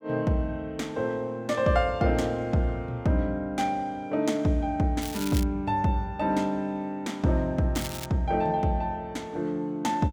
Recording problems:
crackle; at 5 s and at 8 s; loose cable, SNR 11 dB

